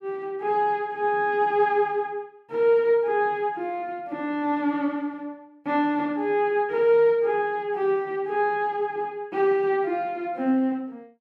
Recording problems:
none

